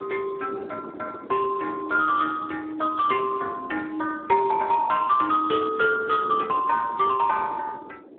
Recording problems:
phone line; 320 Hz to 2.7 kHz, Speex
wind on the microphone; below 460 Hz, SNR 18 dB

